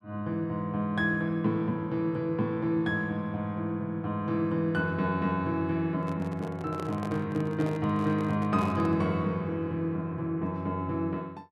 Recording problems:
microphone handling noise; from 6 to 9 s; peak -5 dB vs average level

